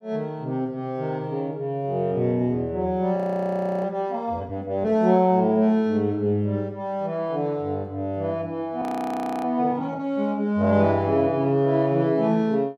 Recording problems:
frozen audio; at 3 s for 0.5 s and at 9 s for 0.5 s

